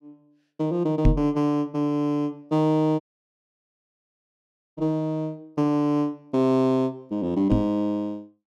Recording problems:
knock on the microphone; at 1 s, at 5 s and at 7.5 s; peak +8 dB vs average level
audio cutting out; at 3 s for 2 s

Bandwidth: 13.5 kHz